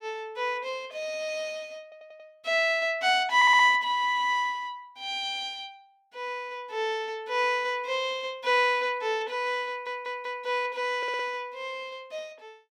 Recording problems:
stutter; 4 times, first at 2 s

